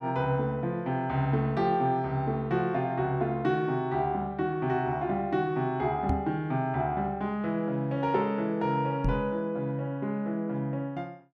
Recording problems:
microphone bump; at 6 s and at 9 s; peak +3 dB vs average level

